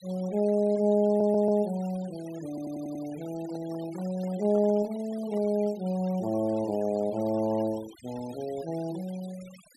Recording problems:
noise reduction artefacts; signal-to-artefact ratio 22 dB
stutter; at 1 s and at 2.5 s
handling noise; from 3.5 to 5.5 s; peak -13 dB vs average level

